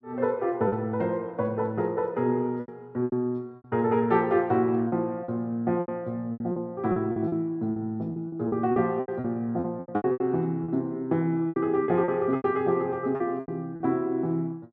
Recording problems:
lost packets; 12% of the sound replaced, filled with repeated pitch periods

